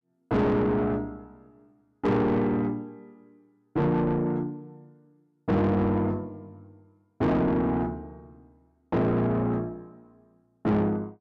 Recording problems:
distortion; soft clipping, signal-to-distortion ratio 8 dB

